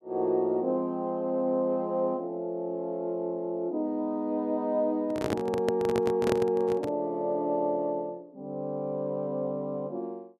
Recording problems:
handling noise; from 5 to 7 s; peak +3 dB vs average level

